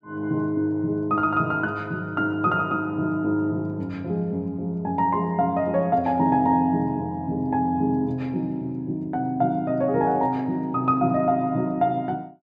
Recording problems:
none

